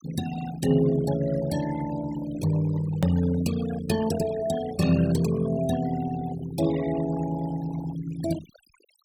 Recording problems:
denoising artefacts; signal-to-artefact ratio 13 dB
click at an edit; at 3 s

